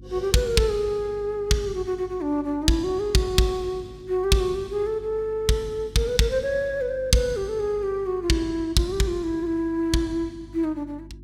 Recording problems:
hum; 50 Hz, harmonics up to 350 Hz, SNR 21 dB

